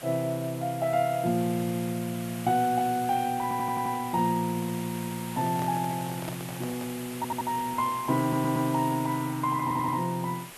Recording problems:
hiss; SNR 13 dB
audio stuttering; 4 times, first at 3.5 s
handling noise; from 5.5 to 7 s; peak -5 dB vs average level

